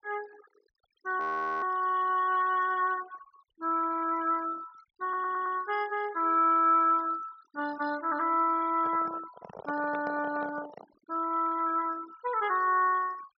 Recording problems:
treble cut off; nothing above 6.3 kHz
noise reduction artefacts; signal-to-artefact ratio 21 dB
audio freezing; at 1 s
stutter; at 5 s
microphone handling noise; from 9 to 11 s; peak -9 dB vs average level

